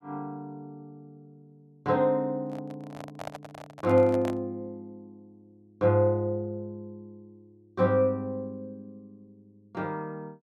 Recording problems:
microphone handling noise; from 2.5 to 4.5 s; peak -5 dB vs average level

